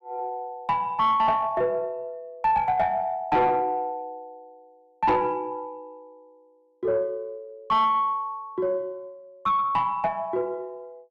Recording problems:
distorted audio; soft clipping, signal-to-distortion ratio 11 dB

